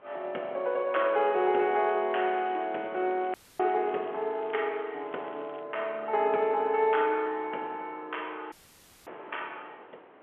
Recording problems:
telephone audio; 320 Hz to 3.3 kHz, G.711
wind noise; below 1.2 kHz, SNR 24 dB
crackle; from 1 to 5.5 s; loose cable, SNR 28 dB
audio cutting out; at 3.5 s and at 8.5 s for 0.5 s

